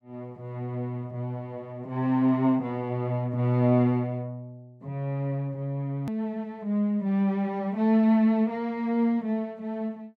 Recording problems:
edit click; at 6 s

